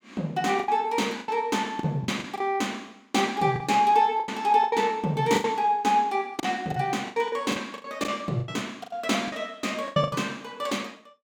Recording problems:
packet loss; 12% of the sound replaced, filled with the last packet

